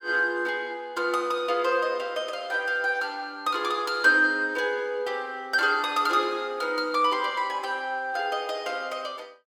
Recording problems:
none

